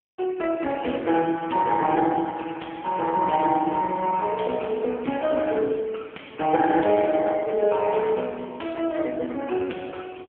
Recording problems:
phone line; 220 Hz to 3.2 kHz, AMR-NB

